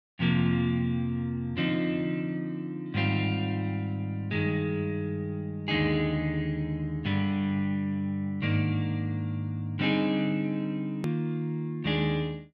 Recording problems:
edit click; at 11 s

